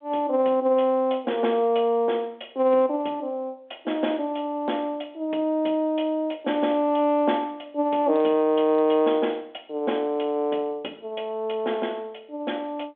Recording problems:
telephone audio; 260 Hz to 3.5 kHz, G.726

